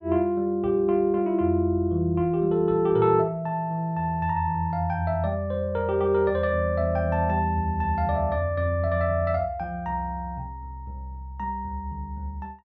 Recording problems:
none

